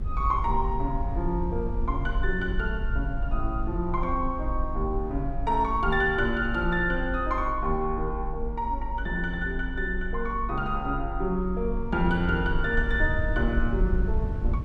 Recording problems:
rumble; below 54 Hz, strongest tone 22 Hz, SNR 4 dB

